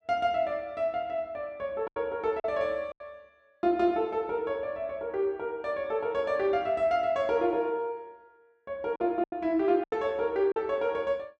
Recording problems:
lost packets; 4% of the sound replaced, filled with silence

